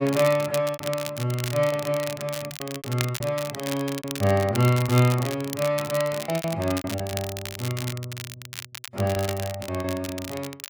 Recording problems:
crackling; vinyl, SNR 10 dB
lost packets; 11% of the sound replaced, filled with repeated pitch periods

